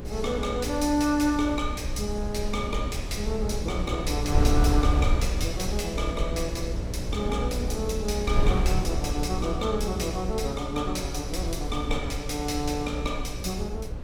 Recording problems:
mains hum; 60 Hz, harmonics up to 600 Hz, SNR 7 dB
wind noise; below 82 Hz, SNR 3 dB

